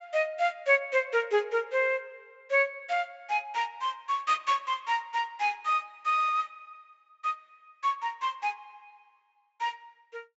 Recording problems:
treble missing; nothing above 8 kHz

